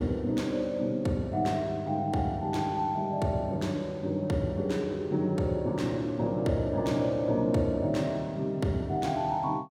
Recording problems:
none

